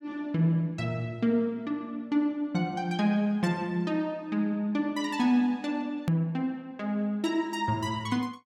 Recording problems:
hard cut with a click; at 6 s

